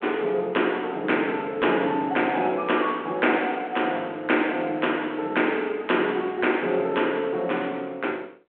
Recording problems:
telephone audio; 220 Hz to 3.4 kHz, G.726

